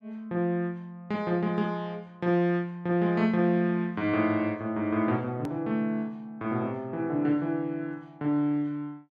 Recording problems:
edit click; at 5.5 s

